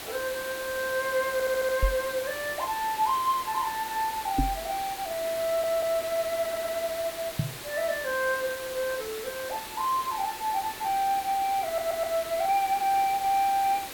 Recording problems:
hiss; slope -2 dB per octave, SNR 9 dB
audio stuttering; 4 times, first at 1.5 s
microphone thump; at 2 s, at 4.5 s and at 7.5 s; peak +5 dB vs average level

